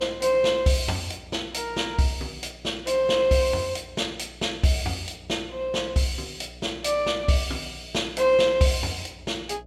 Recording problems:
electrical hum; 60 Hz, harmonics up to 660 Hz, SNR 23 dB

